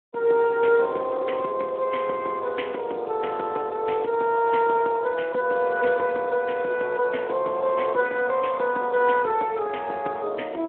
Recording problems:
phone line; 300 Hz to 3.2 kHz, Speex

